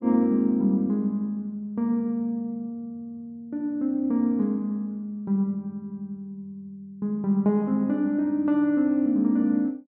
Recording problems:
none

